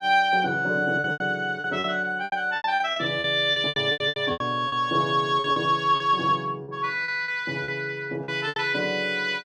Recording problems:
packet loss; 14% of the sound replaced, filled with repeated pitch periods

